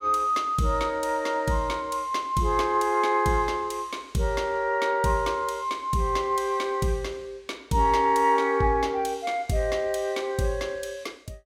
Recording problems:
none

